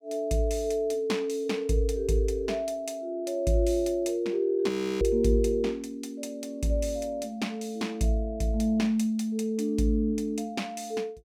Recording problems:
audio freezing; at 4.5 s

